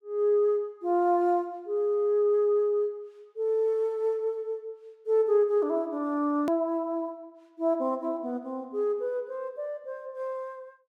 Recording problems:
click at an edit; at 6.5 s

